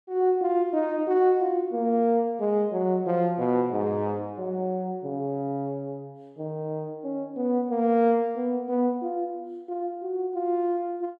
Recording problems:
none

